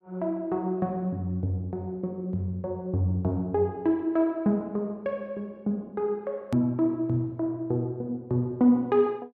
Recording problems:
edit click; at 6.5 s

